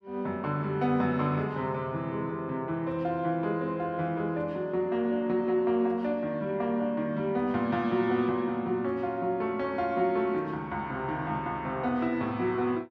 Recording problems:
none

